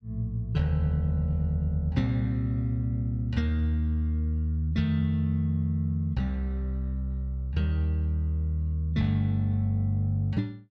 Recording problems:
none

